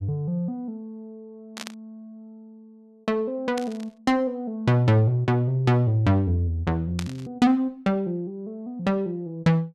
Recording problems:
burst of static; at 1.5 s, at 3.5 s and at 7 s; peak -5 dB vs average level

